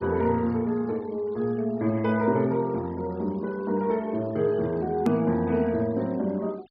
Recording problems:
treble cut off; nothing above 5.2 kHz
noise reduction artefacts; signal-to-artefact ratio 26 dB
edit click; at 5 s

